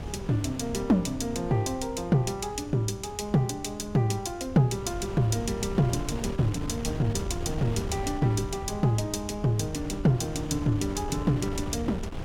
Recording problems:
wind on the microphone; below 230 Hz, SNR 10 dB

